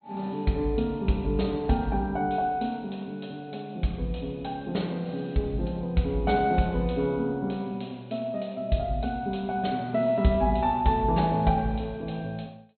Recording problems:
low-pass filter; nothing above 4.3 kHz

